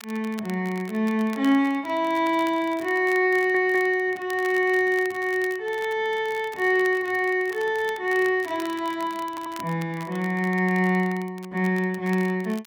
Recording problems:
crackling; vinyl, SNR 22 dB
stutter; at 3.5 s and at 9.5 s

